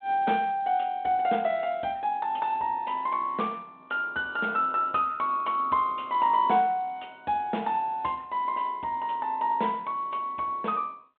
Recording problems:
phone line; 240 Hz to 3.7 kHz, G.726

